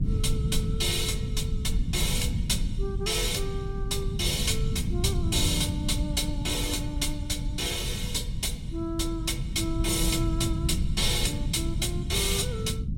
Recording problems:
low-frequency rumble; below 140 Hz, SNR 2 dB

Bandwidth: 16 kHz